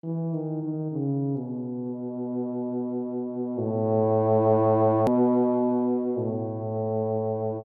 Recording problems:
hard cut with a click; at 5 s

